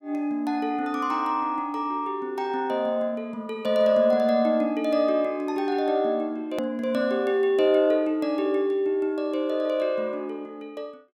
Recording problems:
edit click; at 6.5 s

